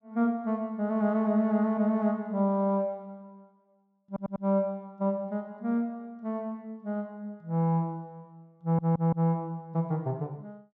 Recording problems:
stutter; at 4 s and at 8.5 s

